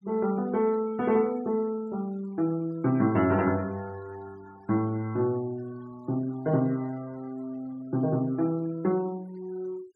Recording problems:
noise reduction artefacts; signal-to-artefact ratio 25 dB

